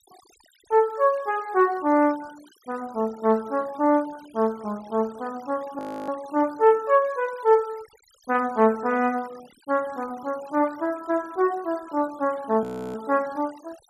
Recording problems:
denoising artefacts; signal-to-artefact ratio 24 dB
audio freezing; at 6 s and at 13 s

